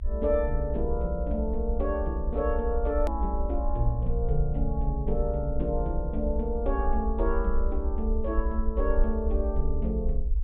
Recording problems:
treble cut off; nothing above 4 kHz
low-frequency rumble; below 62 Hz, SNR 0 dB
hard cut with a click; at 3 s

